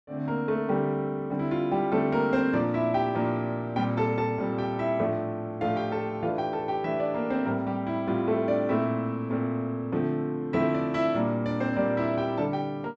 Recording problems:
none

